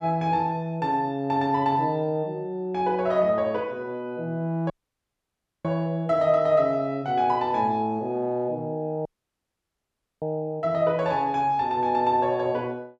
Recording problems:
audio cutting out; at 4.5 s for 1 s and at 9 s for 1 s

